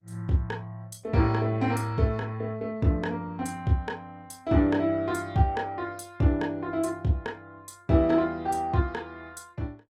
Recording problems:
lossy codec; Opus, log-spectral distance 2 dB, nothing above 17.7 kHz

